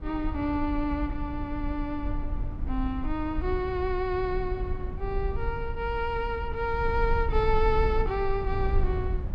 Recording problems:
low-frequency rumble; below 66 Hz, SNR 4 dB

